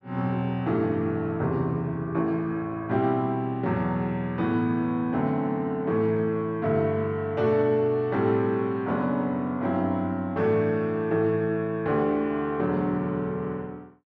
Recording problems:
none

